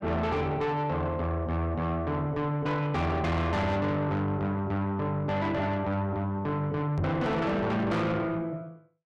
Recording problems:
distorted audio; soft clipping, signal-to-distortion ratio 7 dB
microphone thump; at 7 s; peak +3 dB vs average level

